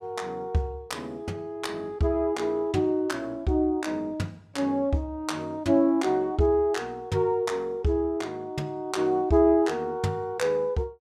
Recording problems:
none

